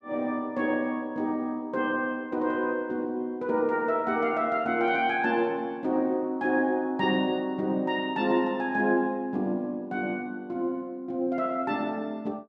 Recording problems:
none

